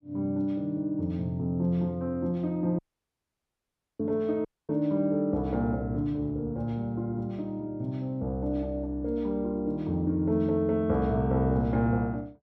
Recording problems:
audio cutting out; at 3 s for 1 s and at 4.5 s

